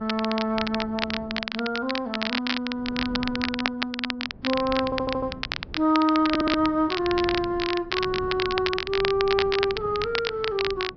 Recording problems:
low-pass filter; nothing above 5.5 kHz
wind noise; below 270 Hz, SNR 17 dB
crackle; vinyl, SNR 5 dB
stutter; at 5 s and at 6.5 s

